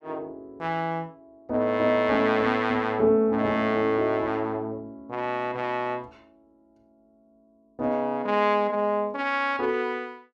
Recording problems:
none

